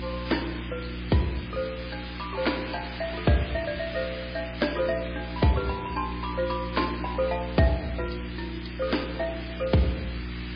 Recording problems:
codec artefacts; MP3, log-spectral distance 11 dB, nothing above 4.6 kHz
hum; 60 Hz, harmonics up to 360 Hz, SNR 8 dB
hiss; SNR 11 dB
crackling; from 3.5 to 5.5 s; loose cable, SNR 22 dB

